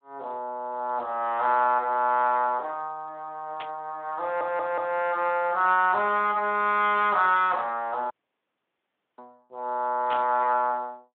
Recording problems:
phone line; 220 Hz to 3.7 kHz, Speex
burst of static; at 3.5 s and at 10 s; peak -8 dB vs average level
audio stuttering; at 4 s
audio cutting out; at 8 s for 1 s

